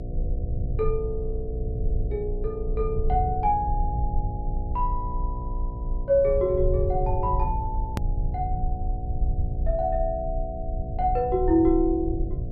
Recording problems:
treble missing; nothing above 5.5 kHz
hum; 60 Hz, harmonics up to 720 Hz, SNR 12 dB
rumble; below 74 Hz, strongest tone 30 Hz, SNR 4 dB
click at an edit; at 8 s

